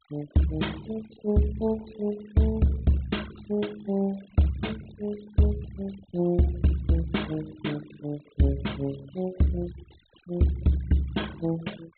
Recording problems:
treble missing; nothing above 4 kHz
denoising artefacts; signal-to-artefact ratio 20 dB

